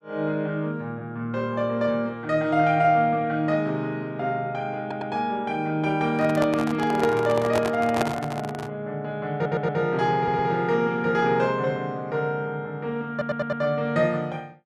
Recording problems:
stutter; 4 times, first at 5 s
microphone handling noise; from 6 to 8.5 s; peak +4 dB vs average level

